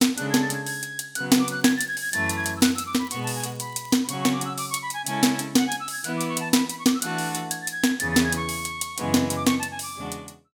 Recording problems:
crackle; from 1.5 to 4 s; loose cable, SNR 25 dB

